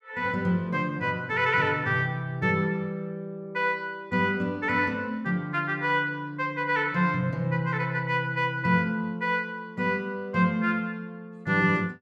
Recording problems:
none

